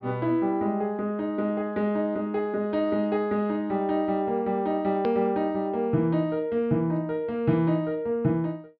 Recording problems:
low-pass filter; nothing above 5.5 kHz
edit click; at 5 s

